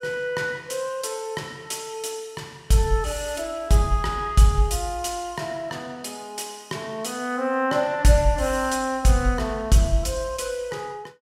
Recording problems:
none

